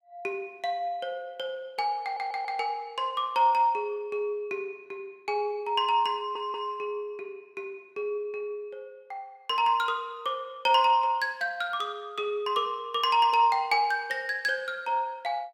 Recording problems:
audio stuttering; at 2 s and at 6 s

